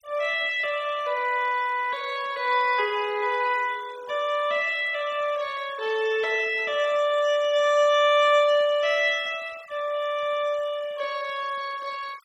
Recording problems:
noise reduction artefacts; signal-to-artefact ratio 21 dB

